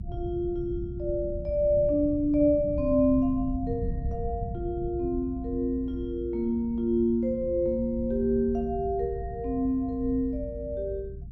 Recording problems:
low-frequency rumble; below 120 Hz, SNR 10 dB

